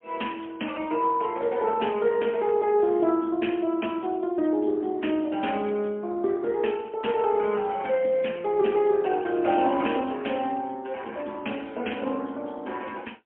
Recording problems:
phone line; 220 Hz to 3.2 kHz, AMR-NB, then MP3

